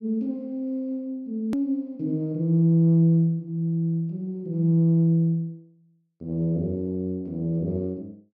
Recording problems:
hard cut with a click; at 1.5 s

